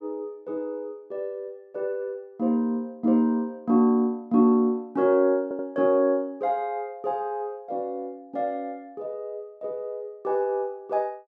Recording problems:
audio stuttering; at 5.5 s

